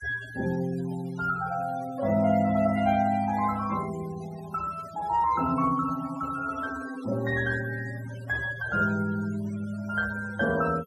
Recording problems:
noise reduction artefacts; signal-to-artefact ratio 17 dB

